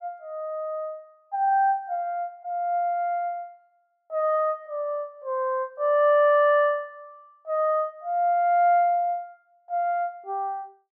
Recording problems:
none

